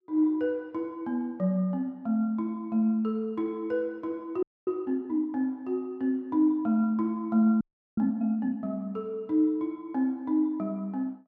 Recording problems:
audio freezing; at 4.5 s and at 7.5 s

